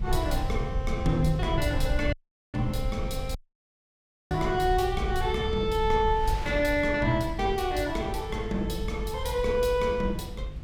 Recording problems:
mains hum; 50 Hz, harmonics up to 500 Hz, SNR 16 dB
rumble; below 82 Hz, SNR 6 dB
wind noise; below 2.5 kHz, SNR 22 dB
audio cutting out; at 2 s and at 3.5 s for 1 s

